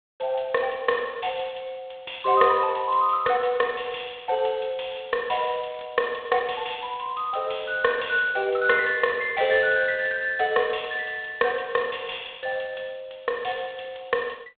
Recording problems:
telephone audio; 280 Hz to 3.7 kHz, G.726
crackling; at 5.5 s; loose cable, SNR 27 dB

